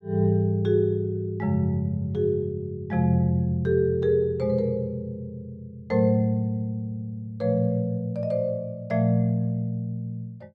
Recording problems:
none

